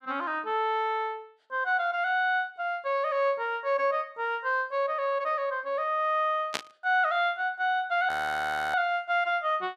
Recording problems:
burst of static; at 6.5 s; peak +2 dB vs average level
audio freezing; at 8 s for 0.5 s

